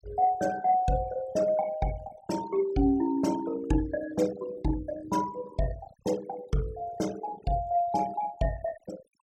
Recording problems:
denoising artefacts; signal-to-artefact ratio 17 dB

